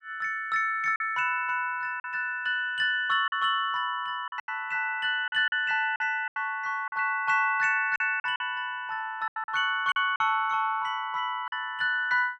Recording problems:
lost packets; 7% of the sound replaced, filled with silence

